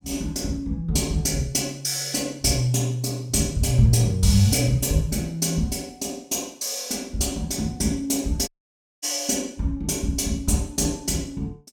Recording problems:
audio cutting out; at 8.5 s for 0.5 s

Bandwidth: 17 kHz